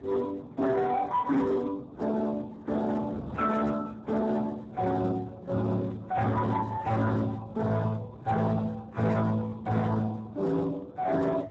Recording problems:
lossy compression; MP3, then Speex, log-spectral distance 4 dB, nothing above 7.6 kHz
distortion; hard clipping, uneven, signal-to-distortion ratio 7 dB
wind noise; below 510 Hz, SNR 18 dB

